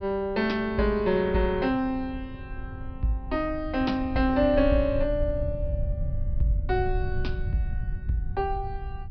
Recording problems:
treble cut off; nothing above 5.5 kHz
rumble; below 88 Hz, SNR 7 dB

